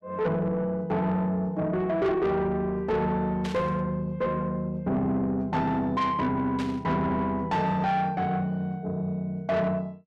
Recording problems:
distorted audio; soft clipping, signal-to-distortion ratio 10 dB
static burst; at 3.5 s and at 6.5 s; peak -7 dB vs average level

